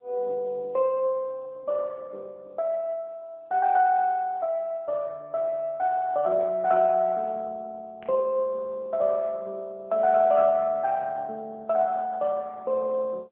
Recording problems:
phone line; 280 Hz to 3.3 kHz, AMR-NB
static burst; at 8 s; peak -21 dB vs average level

